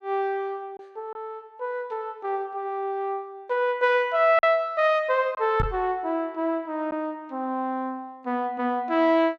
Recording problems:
packet loss; 1.3% of the sound replaced, filled with silence
microphone bump; at 5.5 s; peak +2 dB vs average level

